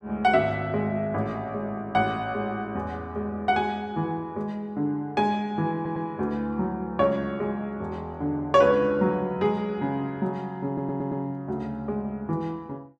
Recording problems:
stutter; at 6 s and at 11 s

